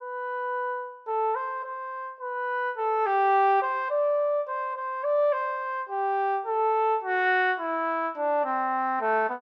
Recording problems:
none

